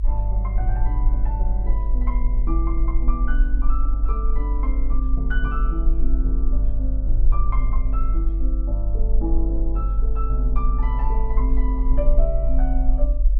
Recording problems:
rumble; below 48 Hz, SNR -8 dB

